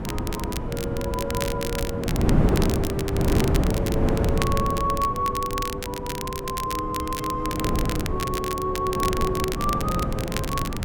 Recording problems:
wind on the microphone; below 340 Hz, SNR -2 dB
crackle; vinyl, SNR 6 dB

